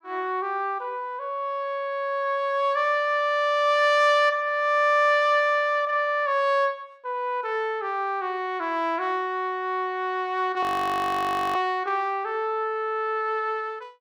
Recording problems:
frozen audio; at 11 s for 1 s

